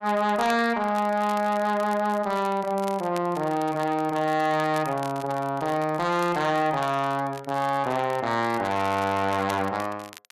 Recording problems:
distorted audio; soft clipping, signal-to-distortion ratio 11 dB
crackling; vinyl, SNR 20 dB

